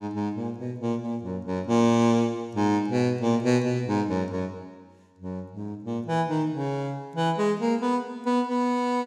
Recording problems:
none

